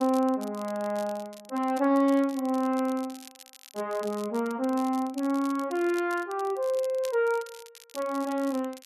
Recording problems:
crackle; vinyl, SNR 20 dB

